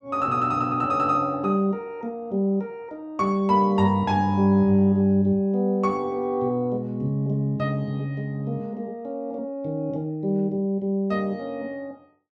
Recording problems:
none

